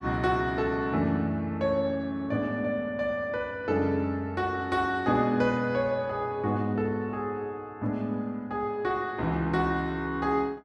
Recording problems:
none

